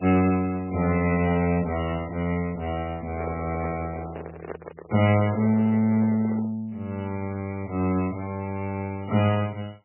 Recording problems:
codec artefacts; MP3, log-spectral distance 4 dB, nothing above 2.6 kHz
handling noise; from 3 to 6.5 s; peak -5 dB vs average level

